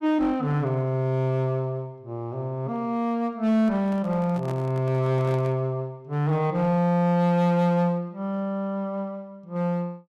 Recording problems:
distortion; hard clipping, uneven, signal-to-distortion ratio 10 dB
microphone handling noise; from 3.5 to 5.5 s; peak -8 dB vs average level

